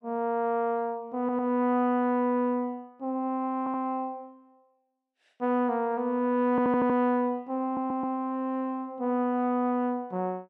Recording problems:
audio stuttering; 4 times, first at 1 s

